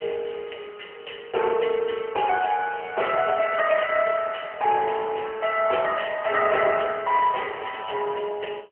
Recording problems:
phone line; 370 Hz to 2.9 kHz, AMR-NB

